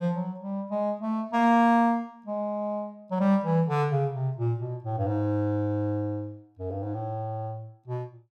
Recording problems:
none

